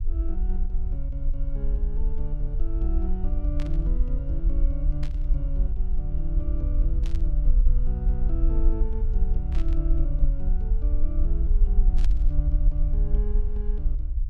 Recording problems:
rumble; below 46 Hz, SNR -10 dB
burst of static; 5 times, first at 3.5 s; peak -2 dB vs average level

